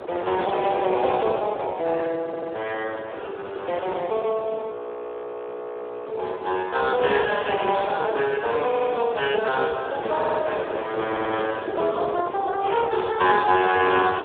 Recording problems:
telephone audio; 340 Hz to 2.9 kHz, Speex
wind on the microphone; below 750 Hz, SNR 10 dB
audio stuttering; 4 times, first at 2.5 s
frozen audio; at 4.5 s for 1.5 s

